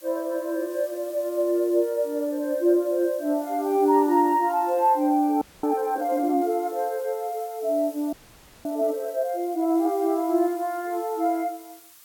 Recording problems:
hiss; SNR 22 dB
frozen audio; at 5.5 s and at 8 s for 0.5 s

